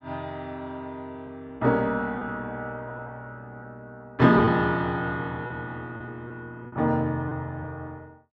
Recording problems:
lost packets; 4% of the sound replaced, filled with repeated pitch periods

